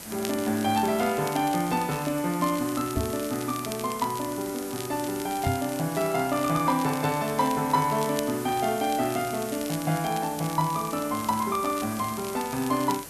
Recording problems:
background hiss; slope -2 dB per octave, SNR 12 dB
crackling; vinyl, SNR 15 dB
microphone thump; at 3 s and at 5.5 s; peak +3 dB vs average level

